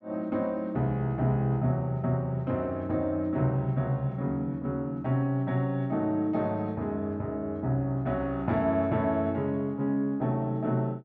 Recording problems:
none

